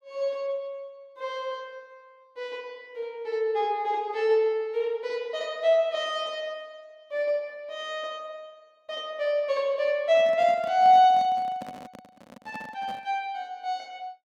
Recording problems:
microphone handling noise; from 10 to 13 s; peak -10 dB vs average level

